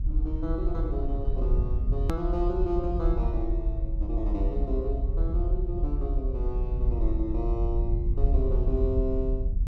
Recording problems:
rumble; below 58 Hz, strongest tone 36 Hz, SNR -4 dB
hard cut with a click; at 2 s

